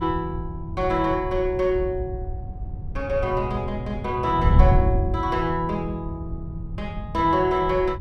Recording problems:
wind noise; below 110 Hz, SNR 4 dB

